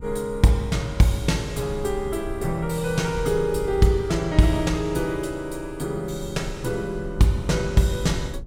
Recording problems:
low-frequency rumble; below 76 Hz, SNR 15 dB

